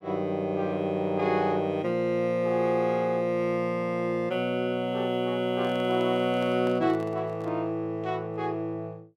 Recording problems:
microphone handling noise; from 5.5 to 7.5 s; peak -11 dB vs average level

